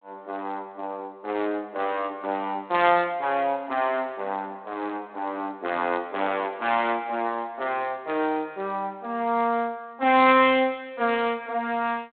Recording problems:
phone line; 190 Hz to 3.7 kHz, G.726

